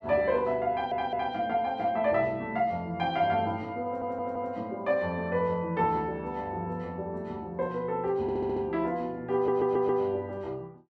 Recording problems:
stutter; 4 times, first at 0.5 s

